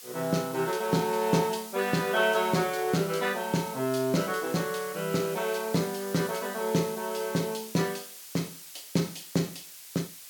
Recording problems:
hiss; slope +3 dB per octave, SNR 13 dB

